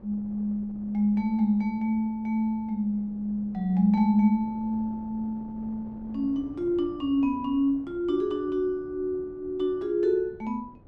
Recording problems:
wind on the microphone; below 340 Hz, SNR 22 dB

